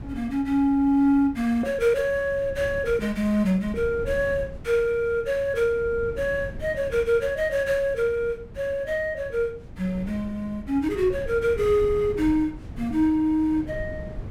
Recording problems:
wind noise; below 180 Hz, SNR 16 dB

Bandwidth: 16 kHz